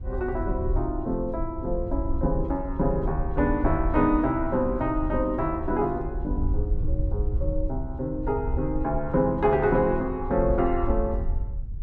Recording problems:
wind noise; below 68 Hz, SNR 5 dB

